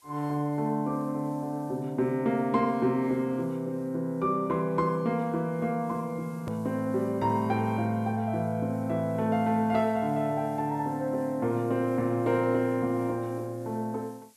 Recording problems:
background hiss; SNR 30 dB
edit click; at 6.5 s

